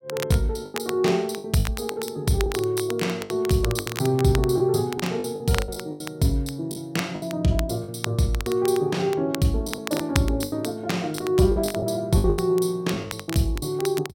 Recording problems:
crackling; vinyl, SNR 12 dB
packet loss; 12% of the sound replaced, filled with the last packet

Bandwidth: 16.5 kHz